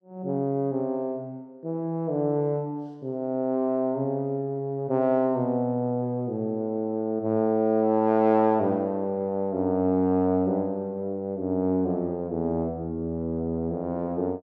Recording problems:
none

